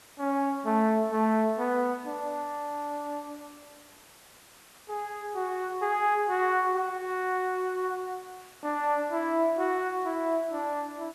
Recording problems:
background hiss; slope -2 dB per octave, SNR 23 dB

